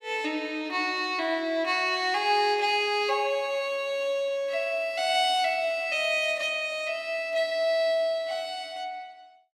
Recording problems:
none

